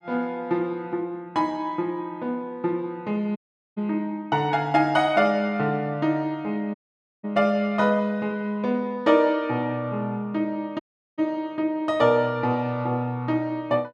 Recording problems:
dropout; at 3.5 s, at 7 s and at 11 s

